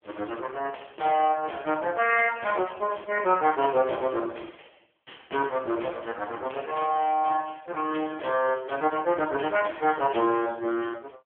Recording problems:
phone line; 280 Hz to 3.2 kHz, AMR-NB

